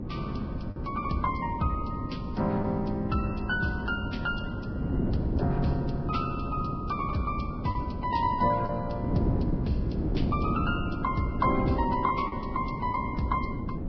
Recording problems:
codec artefacts; Vorbis, log-spectral distance 2 dB, nothing above 5.3 kHz
wind on the microphone; below 280 Hz, SNR 2 dB
lost packets; 1.6% of the sound replaced, filled with the last packet

